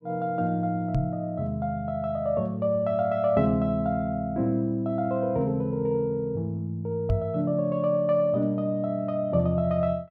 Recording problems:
microphone bump; at 1 s and at 7 s; peak +3 dB vs average level

